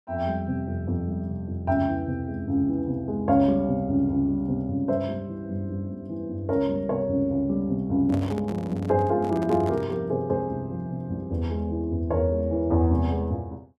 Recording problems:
microphone handling noise; from 8 to 10 s; peak -6 dB vs average level

